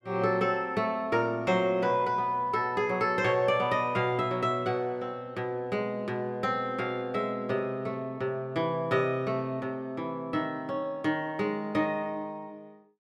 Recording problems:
none

